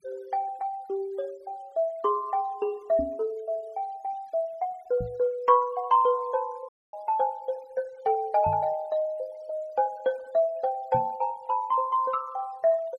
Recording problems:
denoising artefacts; signal-to-artefact ratio 27 dB
microphone thump; 4 times, first at 3 s; peak -3 dB vs average level
dropout; at 6.5 s

